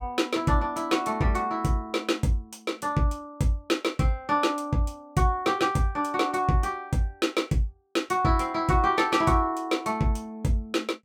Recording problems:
none

